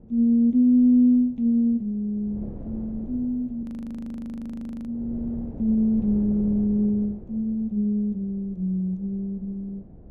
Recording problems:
wind noise; below 280 Hz, SNR 19 dB
audio freezing; at 3.5 s for 1.5 s

